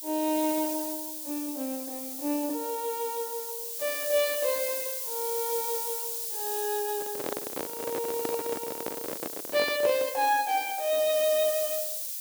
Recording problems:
hiss; SNR 3 dB
microphone handling noise; from 7 to 10 s; peak 0 dB vs average level

